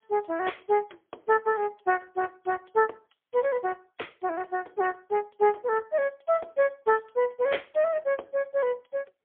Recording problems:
phone line; 320 Hz to 3.4 kHz, AMR-NB, then MP3

